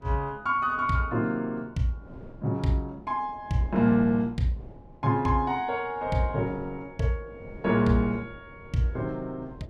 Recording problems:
wind on the microphone; below 380 Hz, SNR 19 dB

